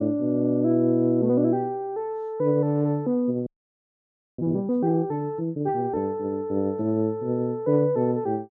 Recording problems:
frozen audio; at 3.5 s for 1 s

